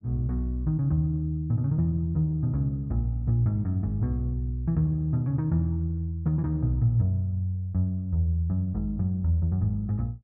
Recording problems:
none

